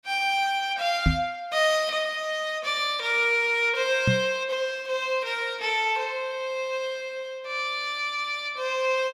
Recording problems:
microphone thump; at 1 s and at 4 s; peak +6 dB vs average level

